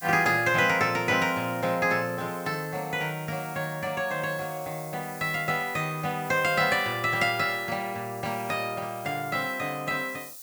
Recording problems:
background hiss; SNR 17 dB

